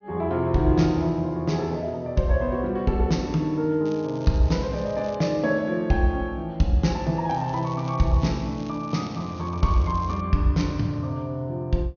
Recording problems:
treble missing; nothing above 6.6 kHz
crackle; from 4 to 5 s and from 7.5 to 10 s; loose cable, SNR 24 dB

